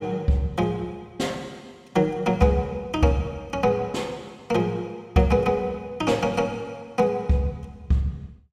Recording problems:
none

